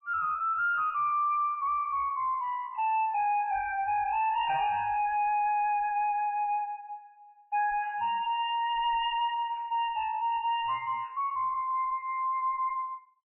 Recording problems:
lossy codec; MP3, log-spectral distance 2 dB, nothing above 2.8 kHz
distorted audio; soft clipping, signal-to-distortion ratio 10 dB

